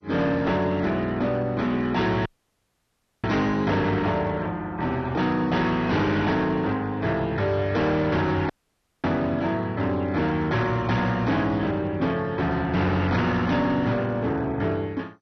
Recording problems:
lossy codec; MP2, log-spectral distance 2 dB, nothing above 6 kHz
distorted audio; hard clipping, signal-to-distortion ratio 11 dB
dropout; at 2.5 s for 1 s and at 8.5 s for 0.5 s

